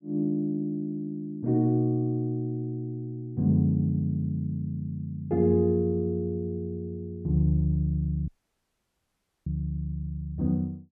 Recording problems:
dropout; at 8.5 s for 1 s

